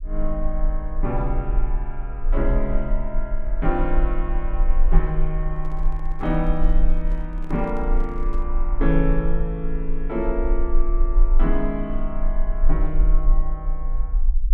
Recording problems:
low-frequency rumble; below 36 Hz, strongest tone 20 Hz, SNR -2 dB
microphone handling noise; from 5.5 to 8.5 s; peak -8 dB vs average level

